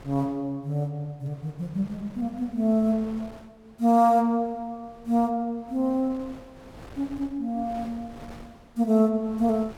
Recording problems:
wind on the microphone; below 880 Hz, SNR 23 dB

